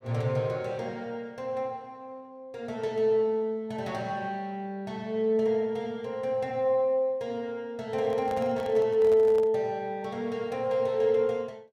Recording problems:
handling noise; from 8 to 9.5 s; peak -8 dB vs average level

